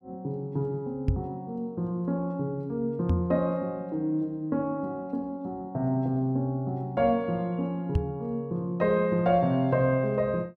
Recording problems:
knock on the microphone; at 1 s, at 3 s and at 8 s; peak +6 dB vs average level

